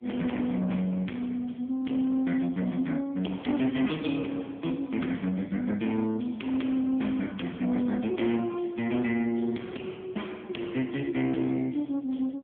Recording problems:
phone line; 130 Hz to 3.4 kHz, AMR-NB
distorted audio; soft clipping, signal-to-distortion ratio 9 dB

